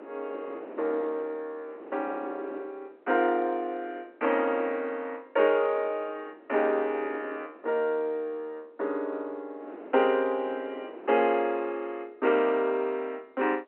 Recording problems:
telephone audio; 260 Hz to 3.1 kHz, G.711
wind on the microphone; below 660 Hz, SNR 18 dB

